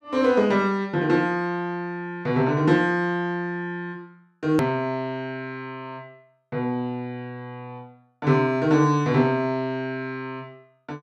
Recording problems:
click at an edit; at 4.5 s

